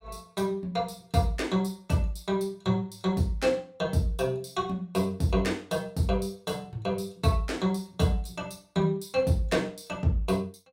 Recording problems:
none

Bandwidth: 16 kHz